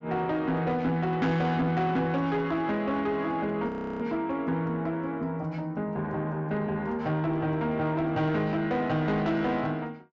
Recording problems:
treble missing; nothing above 7.5 kHz
distorted audio; soft clipping, signal-to-distortion ratio 11 dB
audio freezing; at 3.5 s

